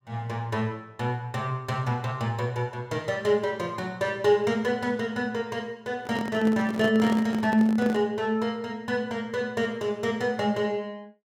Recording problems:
handling noise; from 6 to 8 s; peak -2 dB vs average level

